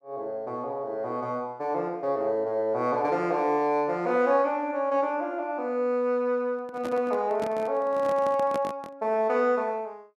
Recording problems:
microphone handling noise; from 6.5 to 9 s; peak -3 dB vs average level

